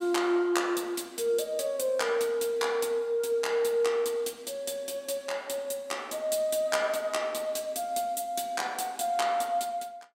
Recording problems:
none

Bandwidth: 16 kHz